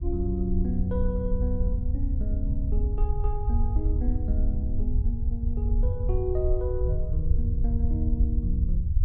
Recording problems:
treble cut off; nothing above 7.4 kHz
rumble; below 74 Hz, SNR -6 dB
wind on the microphone; below 86 Hz, SNR 10 dB

